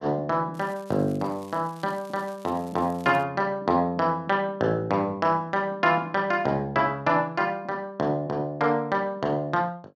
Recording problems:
crackling; from 0.5 to 3 s; loose cable, SNR 27 dB

